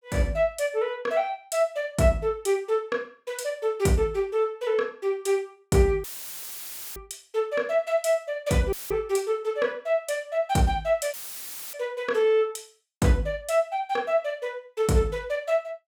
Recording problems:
dropout; at 6 s for 1 s, at 8.5 s and at 11 s for 0.5 s; filled with static

